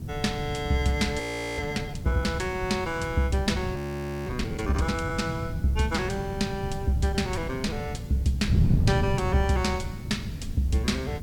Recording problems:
hiss; slope 0 dB per octave, SNR 27 dB
wind on the microphone; below 170 Hz, SNR 4 dB
frozen audio; at 1 s and at 4 s for 0.5 s

